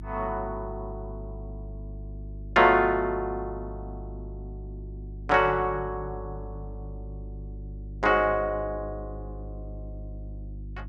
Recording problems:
electrical hum; 50 Hz, harmonics up to 350 Hz, SNR 14 dB

